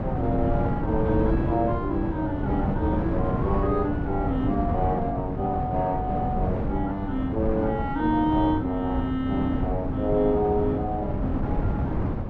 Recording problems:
wind on the microphone; below 280 Hz, SNR 2 dB

